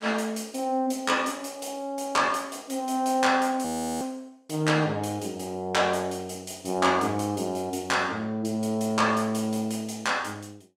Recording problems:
frozen audio; at 3.5 s

